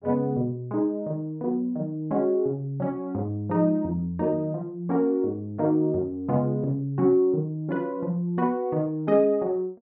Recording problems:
none

